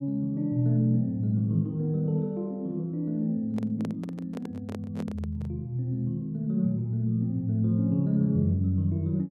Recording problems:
microphone handling noise; from 3.5 to 5.5 s; peak -7 dB vs average level

